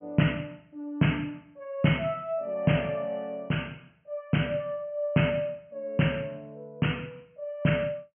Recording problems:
treble cut off; nothing above 3.1 kHz

